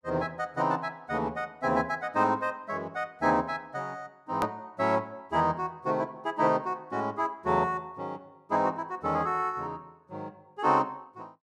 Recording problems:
edit click; at 4.5 s

